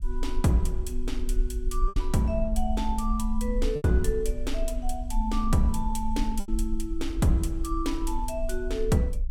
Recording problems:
low-frequency rumble; below 42 Hz, strongest tone 22 Hz, SNR 4 dB
packet loss; 3% of the sound replaced, filled with repeated pitch periods

